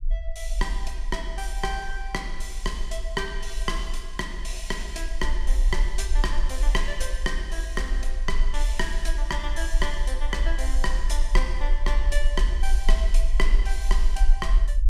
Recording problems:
rumble; below 42 Hz, SNR -4 dB

